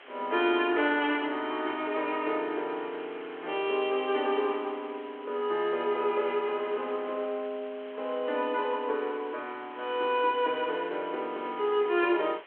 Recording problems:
telephone audio; 300 Hz to 3.4 kHz, G.726
hiss; SNR 20 dB

